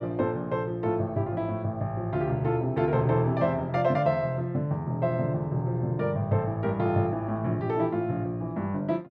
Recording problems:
none

